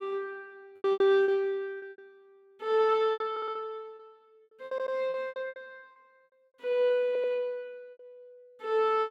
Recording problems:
lost packets; 14% of the sound replaced, filled with repeated pitch periods
stutter; at 3.5 s, at 4.5 s and at 7 s

